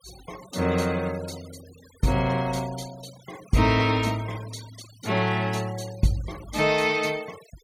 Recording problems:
denoising artefacts; signal-to-artefact ratio 20 dB

